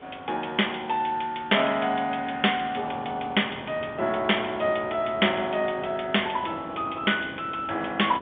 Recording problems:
phone line; 300 Hz to 3.6 kHz, G.711
hiss; SNR 27 dB
wind on the microphone; below 600 Hz, SNR 19 dB

